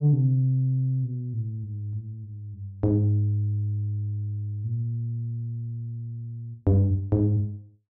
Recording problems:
none

